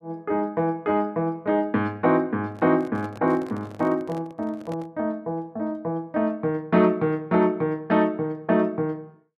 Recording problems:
microphone handling noise; from 2.5 to 5 s; peak -11 dB vs average level

